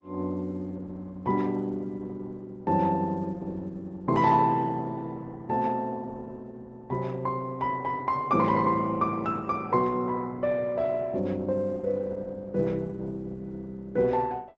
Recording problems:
lossy codec; Opus, log-spectral distance 2 dB, nothing above 7.6 kHz

